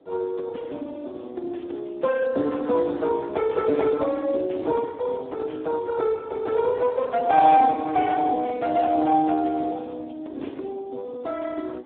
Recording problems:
telephone audio; 260 Hz to 2.3 kHz, Speex
wind on the microphone; below 390 Hz, SNR 18 dB

